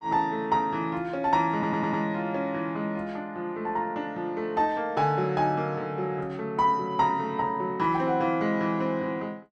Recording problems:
audio stuttering; at 1.5 s

